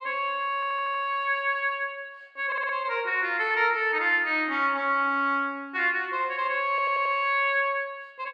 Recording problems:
stutter; at 0.5 s, at 2.5 s and at 6.5 s

